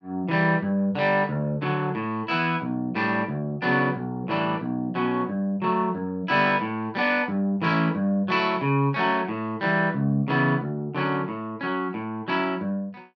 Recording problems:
none

